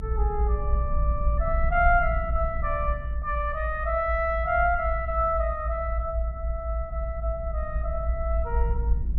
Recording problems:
rumble; below 60 Hz, strongest tone 56 Hz, SNR 2 dB

